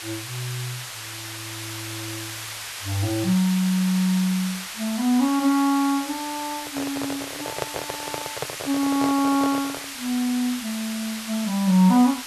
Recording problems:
background hiss; SNR 9 dB
microphone handling noise; from 6.5 to 10 s; peak -1 dB vs average level

